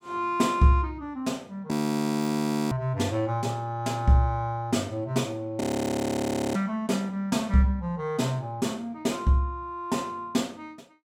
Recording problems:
audio freezing; at 1.5 s for 1 s and at 5.5 s for 1 s

